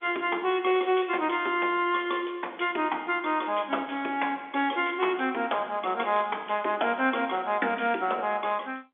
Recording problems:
telephone audio; 240 Hz to 3.5 kHz, G.711

